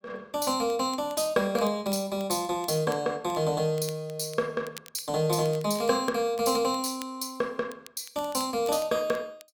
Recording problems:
crackle; vinyl, SNR 22 dB

